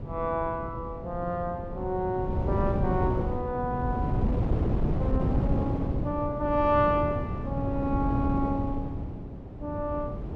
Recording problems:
wind on the microphone; below 240 Hz, SNR 1 dB

